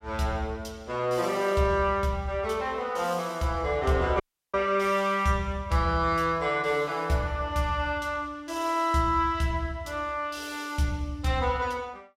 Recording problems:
dropout; at 4 s

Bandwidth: 16.5 kHz